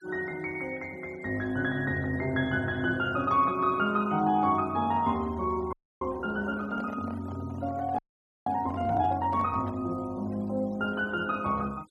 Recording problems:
denoising artefacts; signal-to-artefact ratio 25 dB
audio freezing; at 5.5 s and at 8 s
handling noise; from 6 to 10 s; peak -8 dB vs average level

